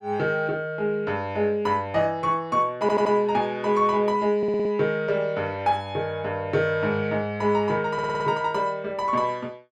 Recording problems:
stutter; at 3 s, at 4.5 s and at 8 s

